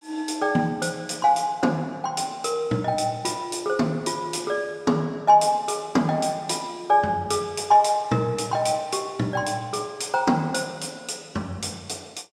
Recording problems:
none

